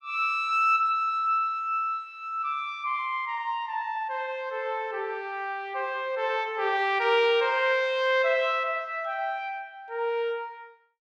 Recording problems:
none

